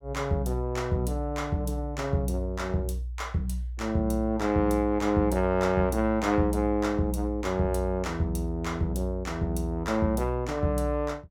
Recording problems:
none

